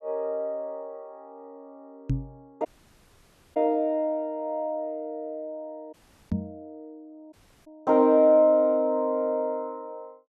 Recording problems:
microphone thump; at 2 s and at 6.5 s; peak +1 dB vs average level
dropout; at 2.5 s for 1 s, at 6 s and at 7.5 s

